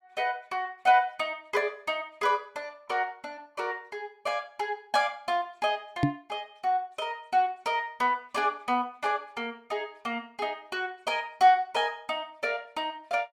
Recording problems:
microphone thump; at 6 s; peak +8 dB vs average level

